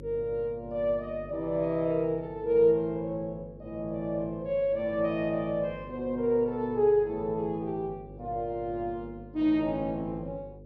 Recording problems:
hum; 50 Hz, harmonics up to 550 Hz, SNR 18 dB

